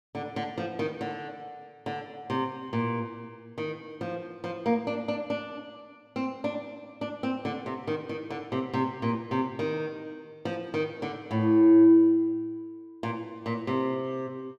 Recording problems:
none

